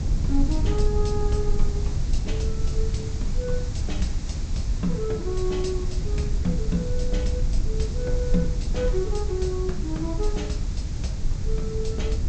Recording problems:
treble missing; nothing above 8 kHz
background hiss; SNR 13 dB
rumble; below 76 Hz, SNR -2 dB

